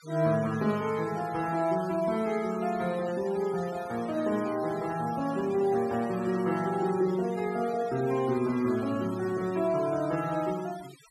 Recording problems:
denoising artefacts; signal-to-artefact ratio 18 dB

